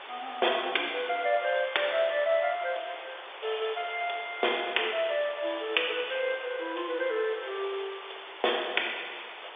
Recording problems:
telephone audio; 320 Hz to 3.6 kHz, G.711
hiss; SNR 12 dB

